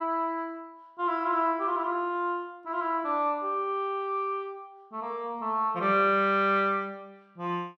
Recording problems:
none

